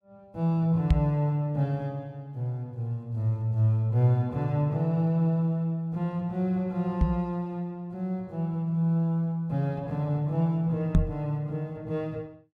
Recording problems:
knock on the microphone; at 1 s, at 7 s and at 11 s; peak +9 dB vs average level

